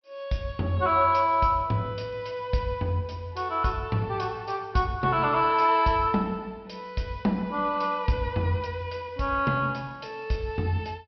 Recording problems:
treble cut off; nothing above 5.5 kHz

